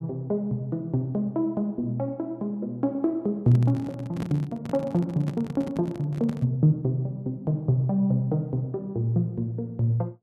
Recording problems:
handling noise; from 3.5 to 6.5 s; peak -1 dB vs average level

